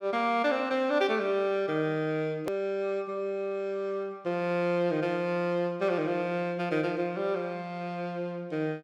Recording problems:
hard cut with a click; at 2.5 s

